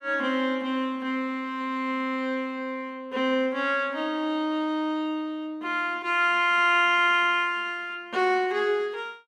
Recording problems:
none

